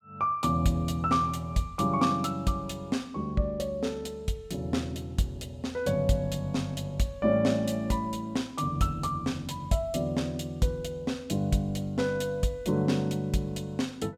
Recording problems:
none

